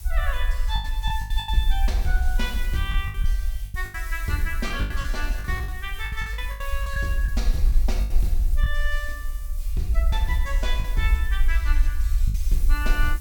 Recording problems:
hiss; SNR 15 dB
rumble; below 52 Hz, SNR -4 dB
lost packets; 9% of the sound replaced, filled with the last packet

